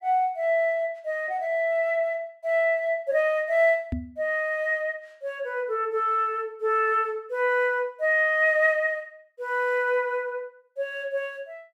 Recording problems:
microphone thump; at 4 s; peak -1 dB vs average level

